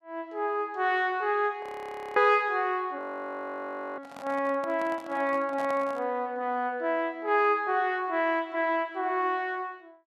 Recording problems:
audio freezing; at 1.5 s for 0.5 s and at 3 s for 1 s
microphone handling noise; from 4 to 6 s; peak -8 dB vs average level

